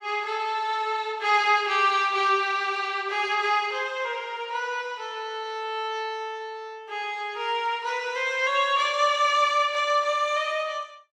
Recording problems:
none

